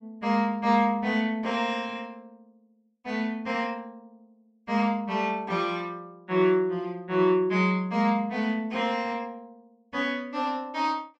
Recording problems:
none

